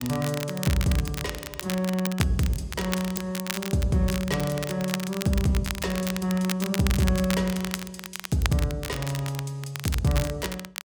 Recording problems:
crackle; vinyl, SNR 8 dB

